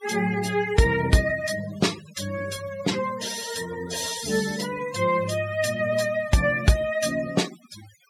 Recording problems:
denoising artefacts; signal-to-artefact ratio 14 dB

